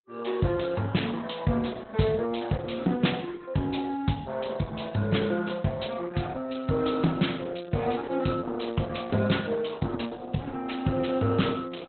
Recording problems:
lossy compression; Opus, log-spectral distance 6 dB, nothing above 4.1 kHz

